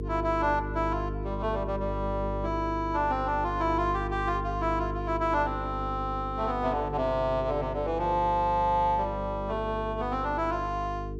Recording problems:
mains hum; 50 Hz, harmonics up to 450 Hz, SNR 7 dB

